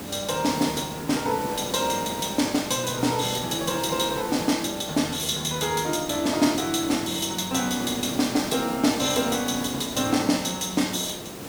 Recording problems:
hiss; slope -5 dB per octave, SNR 9 dB

